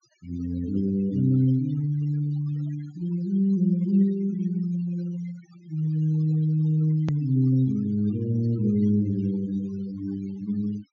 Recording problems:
treble cut off; nothing above 7 kHz
noise reduction artefacts; signal-to-artefact ratio 22 dB
click at an edit; at 7 s

